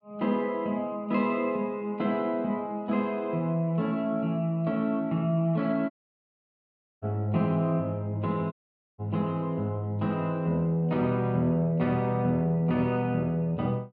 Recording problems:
audio cutting out; at 6 s for 1 s and at 8.5 s

